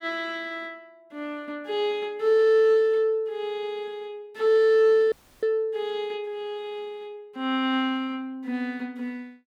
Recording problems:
audio cutting out; at 5 s

